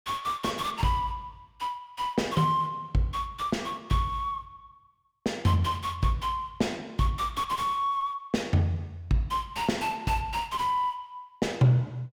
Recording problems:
distortion; soft clipping, signal-to-distortion ratio 10 dB

